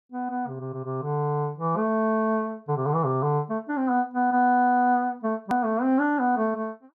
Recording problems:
hard cut with a click; at 5.5 s

